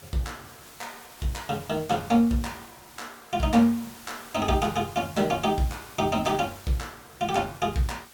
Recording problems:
hiss; slope -1 dB per octave, SNR 19 dB

